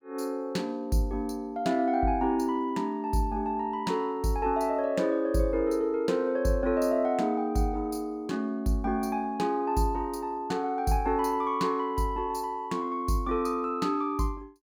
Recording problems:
none

